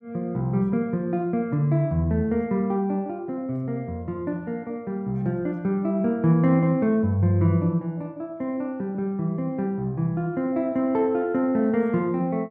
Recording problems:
none

